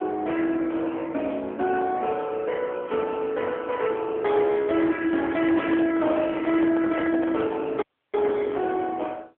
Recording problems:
phone line; 260 Hz to 3.3 kHz, AMR-NB
distorted audio; soft clipping, signal-to-distortion ratio 13 dB
microphone handling noise; from 5.5 to 7.5 s; peak -2 dB vs average level
audio cutting out; at 8 s

